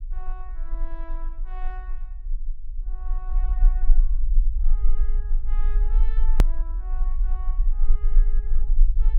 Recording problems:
rumble; below 36 Hz, strongest tone 20 Hz, SNR -21 dB
edit click; at 6.5 s

